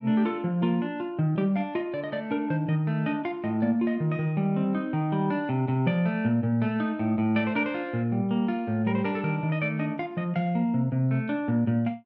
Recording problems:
none

